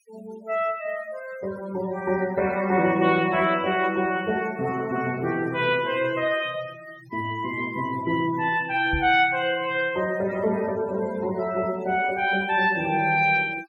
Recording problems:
noise reduction artefacts; signal-to-artefact ratio 19 dB
knock on the microphone; at 9 s; peak -2 dB vs average level

